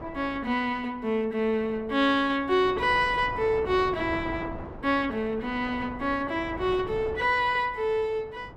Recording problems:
wind on the microphone; below 720 Hz, SNR 15 dB

